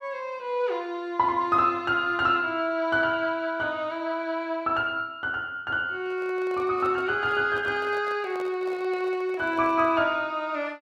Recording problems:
microphone handling noise; from 6 to 10 s; peak -11 dB vs average level

